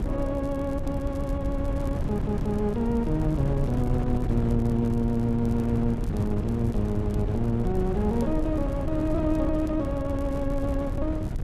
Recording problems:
hum; 50 Hz, harmonics up to 400 Hz, SNR 14 dB
wind on the microphone; below 150 Hz, SNR 3 dB
crackle; vinyl, SNR 28 dB
stutter; at 2 s

